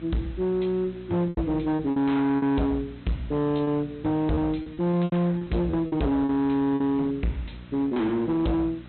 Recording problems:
treble cut off; nothing above 4.1 kHz
distorted audio; hard clipping, signal-to-distortion ratio 8 dB
hum; 60 Hz, harmonics up to 660 Hz, SNR 20 dB
background hiss; SNR 27 dB
packet loss; 9% of the sound replaced, filled with repeated pitch periods

